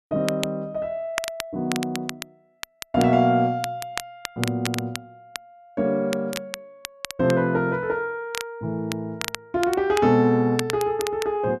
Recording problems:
crackling; vinyl, SNR 10 dB

